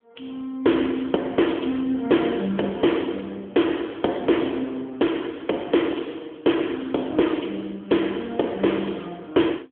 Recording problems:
telephone audio; 220 Hz to 3.4 kHz, AMR-NB

